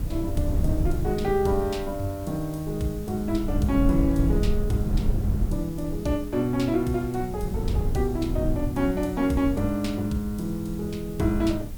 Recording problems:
hum; 50 Hz, harmonics up to 900 Hz, SNR 22 dB
background hiss; slope +1 dB per octave, SNR 21 dB
rumble; below 110 Hz, SNR 4 dB

